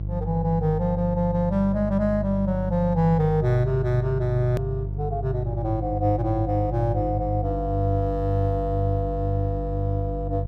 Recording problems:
hum; 50 Hz, harmonics up to 350 Hz, SNR 5 dB
edit click; at 4.5 s

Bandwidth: 15 kHz